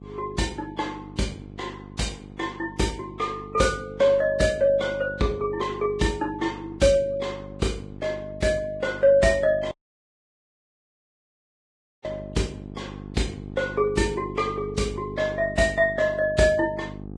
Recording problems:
codec artefacts; Vorbis, log-spectral distance 3 dB
hum; 50 Hz, harmonics up to 850 Hz, SNR 15 dB
dropout; at 9.5 s for 2.5 s

